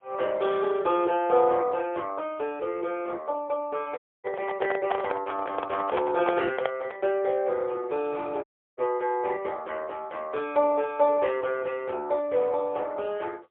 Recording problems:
phone line; 320 Hz to 3.5 kHz, AMR-NB, then MP3
microphone handling noise; from 4 to 7 s; peak +4 dB vs average level
audio cutting out; at 4 s and at 8.5 s

